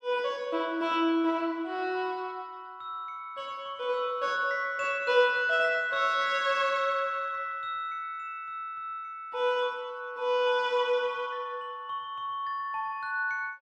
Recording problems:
none

